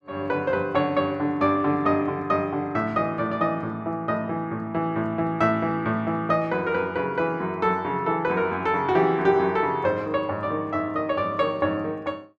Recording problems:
none

